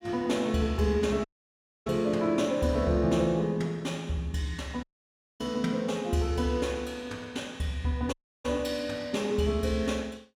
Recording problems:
dropout; at 1.5 s for 0.5 s, at 5 s for 0.5 s and at 8 s

